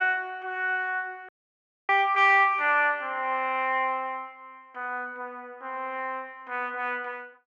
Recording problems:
dropout; at 1.5 s for 0.5 s

